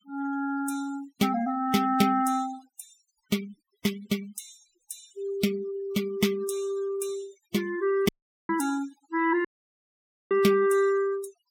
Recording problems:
denoising artefacts; signal-to-artefact ratio 17 dB
audio cutting out; at 8 s and at 9.5 s for 1 s

